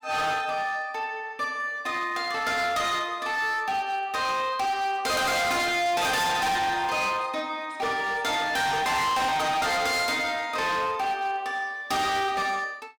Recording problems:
distorted audio; hard clipping, signal-to-distortion ratio 6 dB

